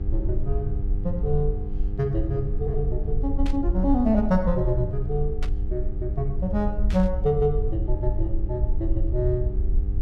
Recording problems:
mains hum; 50 Hz, harmonics up to 900 Hz, SNR 13 dB
rumble; below 58 Hz, SNR 2 dB
static burst; at 3.5 s, at 5.5 s and at 7 s; peak -7 dB vs average level

